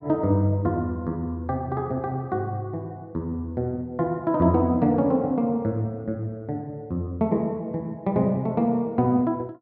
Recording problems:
none

